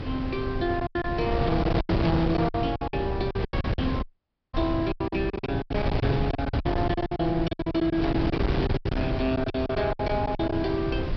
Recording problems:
low-pass filter; nothing above 5.5 kHz
distortion; hard clipping, signal-to-distortion ratio 12 dB
wind on the microphone; below 340 Hz, SNR 2 dB
packet loss; 17% of the sound replaced, filled with silence
dropout; at 4 s for 0.5 s

